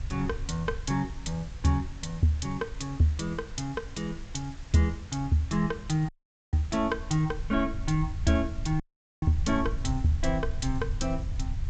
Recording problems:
lossy codec; G.722, log-spectral distance 2 dB, nothing above 7.6 kHz
background hiss; slope -2 dB per octave, SNR 23 dB
rumble; below 78 Hz, SNR 9 dB
dropout; at 6 s and at 9 s

